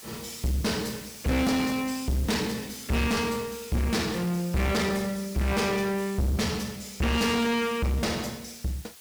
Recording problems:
distortion; soft clipping, signal-to-distortion ratio 6 dB
background hiss; slope +1 dB per octave, SNR 16 dB

